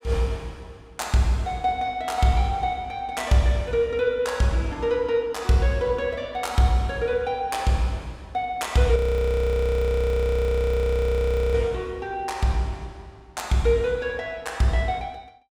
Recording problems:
audio freezing; at 9 s for 2.5 s

